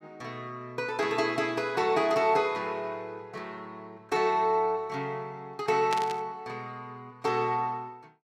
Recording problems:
static burst; at 6 s; peak -1 dB vs average level

